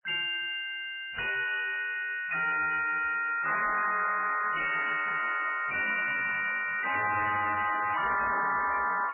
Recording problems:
codec artefacts; MP3, then MP3, log-spectral distance 6 dB, nothing above 2.4 kHz
distorted audio; soft clipping, signal-to-distortion ratio 6 dB

